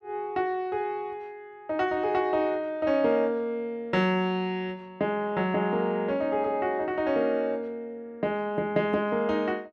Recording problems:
none

